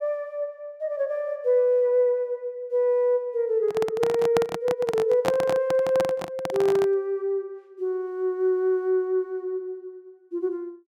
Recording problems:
microphone handling noise; from 3.5 to 7 s; peak +3 dB vs average level

